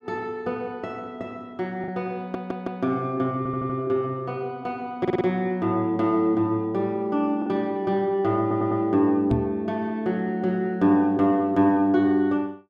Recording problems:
packet loss; 0.7% of the sound replaced, filled with the last packet
audio stuttering; 4 times, first at 2 s
knock on the microphone; at 9.5 s; peak +3 dB vs average level

